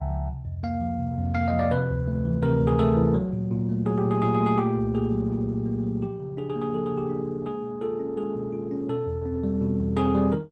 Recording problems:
lossy compression; Opus, log-spectral distance 2 dB

